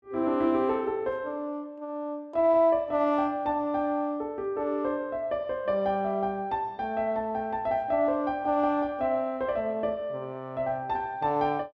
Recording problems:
none

